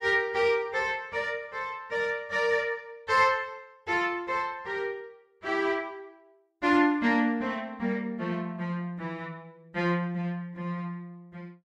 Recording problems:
none

